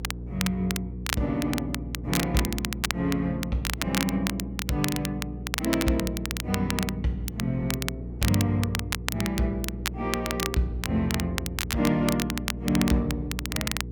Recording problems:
hum; 60 Hz, harmonics up to 480 Hz, SNR 8 dB
wind on the microphone; below 400 Hz, SNR 23 dB
crackling; vinyl, SNR 4 dB

